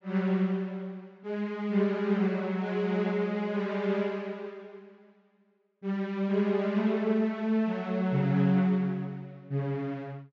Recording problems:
treble missing; nothing above 8 kHz

